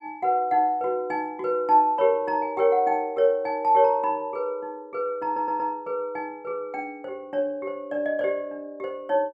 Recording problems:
audio stuttering; at 5.5 s

